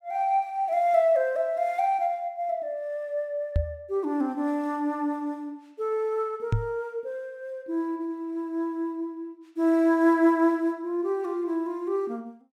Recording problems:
microphone bump; at 3.5 s and at 6.5 s; peak +5 dB vs average level

